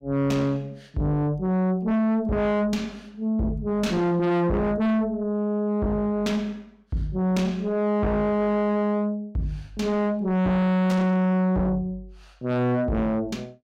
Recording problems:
distorted audio; soft clipping, signal-to-distortion ratio 6 dB

